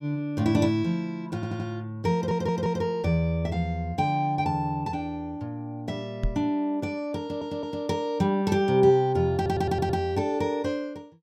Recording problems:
stutter; 4 times, first at 1.5 s
knock on the microphone; at 6 s; peak +1 dB vs average level

